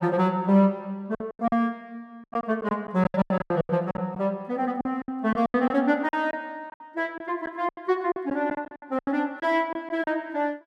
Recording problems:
lost packets; 14% of the sound replaced, filled with silence

